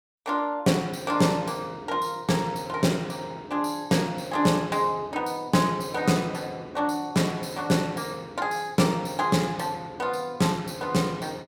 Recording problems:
none

